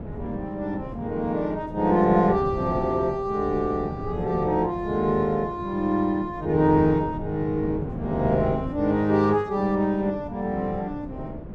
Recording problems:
wind on the microphone; below 300 Hz, SNR 12 dB

